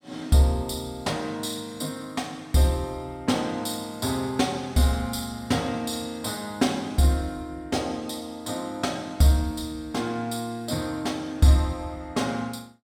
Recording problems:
none

